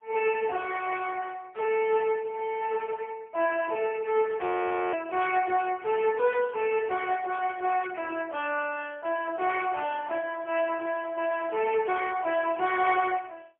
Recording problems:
telephone audio; 320 Hz to 3.3 kHz, AMR-NB, then MP3
frozen audio; at 4.5 s for 0.5 s

